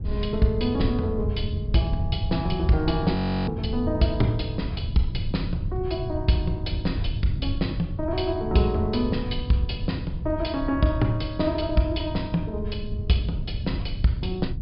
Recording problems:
treble cut off; nothing above 5.5 kHz
rumble; below 110 Hz, SNR 4 dB
audio freezing; at 3 s

